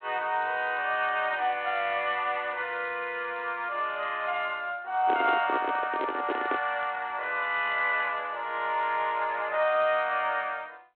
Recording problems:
phone line; 260 Hz to 3.5 kHz, G.726
handling noise; from 5 to 6.5 s; peak +1 dB vs average level

